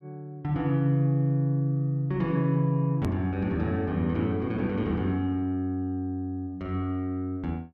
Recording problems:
edit click; at 3 s

